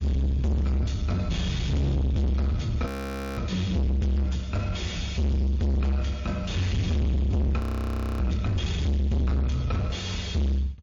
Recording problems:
codec artefacts; MP3, log-spectral distance 2 dB, nothing above 17.1 kHz
distorted audio; soft clipping, signal-to-distortion ratio 6 dB
audio freezing; at 3 s for 0.5 s and at 7.5 s for 0.5 s

